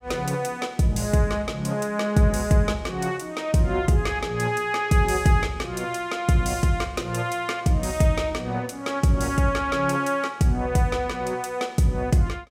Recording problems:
none

